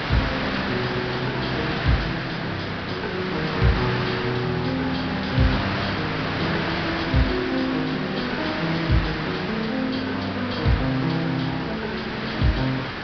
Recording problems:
treble cut off; nothing above 5.5 kHz
background hiss; SNR 2 dB

